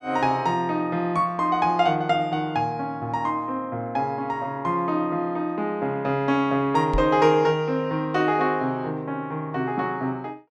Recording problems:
microphone bump; at 7 s; peak 0 dB vs average level

